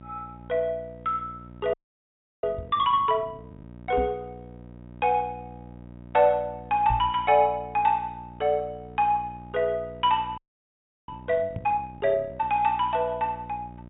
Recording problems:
treble cut off; nothing above 4 kHz
electrical hum; 60 Hz, harmonics up to 1.3 kHz, SNR 19 dB
audio freezing; at 1.5 s for 0.5 s and at 10 s for 0.5 s
microphone bump; 4 times, first at 2.5 s; peak -2 dB vs average level

